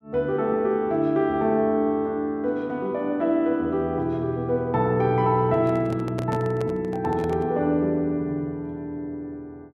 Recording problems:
microphone handling noise; from 5.5 to 7.5 s; peak -4 dB vs average level

